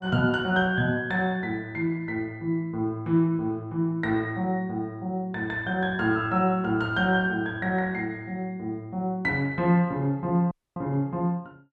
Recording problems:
dropout; at 11 s

